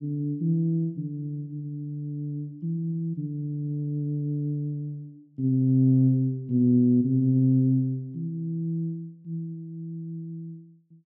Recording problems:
none

